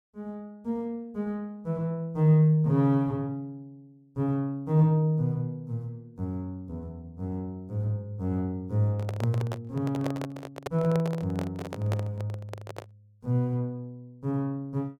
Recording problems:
handling noise; from 9 to 13 s; peak -2 dB vs average level

